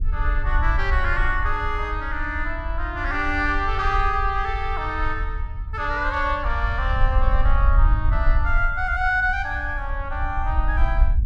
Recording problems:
rumble; below 56 Hz, SNR 2 dB

